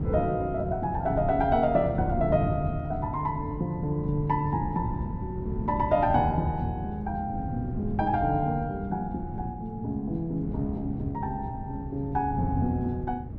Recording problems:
wind on the microphone; below 190 Hz, SNR 6 dB

